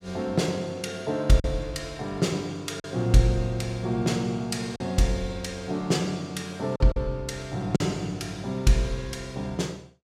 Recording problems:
lost packets; 2% of the sound replaced, filled with silence

